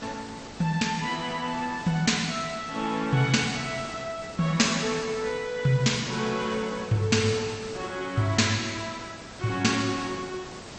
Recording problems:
codec artefacts; MP2, log-spectral distance 5 dB, nothing above 8 kHz
background hiss; slope -4 dB per octave, SNR 15 dB

